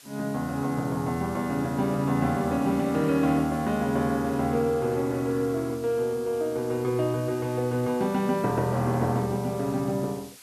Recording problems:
hiss; slope +1 dB per octave, SNR 21 dB

